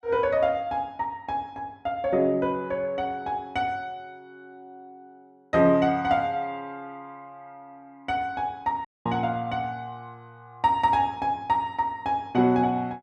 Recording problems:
audio cutting out; at 9 s

